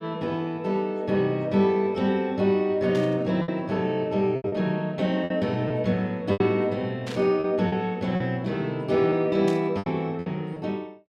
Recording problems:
packet loss; 6% of the sound replaced, filled with repeated pitch periods
static burst; at 3 s, at 7 s and at 9.5 s; peak -9 dB vs average level

